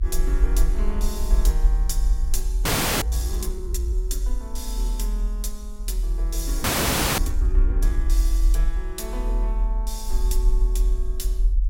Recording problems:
low-frequency rumble; below 46 Hz, strongest tone 40 Hz, SNR -9 dB
frozen audio; at 2.5 s and at 6.5 s for 0.5 s

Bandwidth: 16.5 kHz